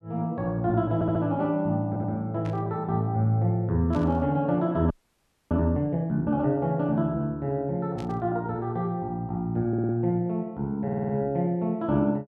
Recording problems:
audio stuttering; 4 times, first at 1 s
burst of static; at 2.5 s, at 4 s and at 8 s; peak -15 dB vs average level
audio freezing; at 5 s for 0.5 s

